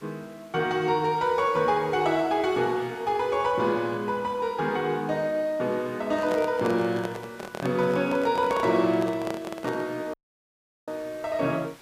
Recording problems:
background hiss; slope -2 dB per octave, SNR 25 dB
handling noise; from 6 to 10 s; peak -3 dB vs average level
dropout; at 10 s for 0.5 s

